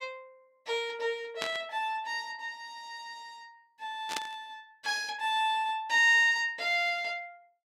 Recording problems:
static burst; at 1.5 s and at 4 s; peak -1 dB vs average level

